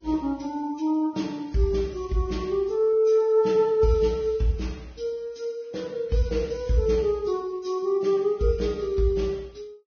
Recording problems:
lossy codec; Vorbis, log-spectral distance 2 dB, nothing above 6.3 kHz

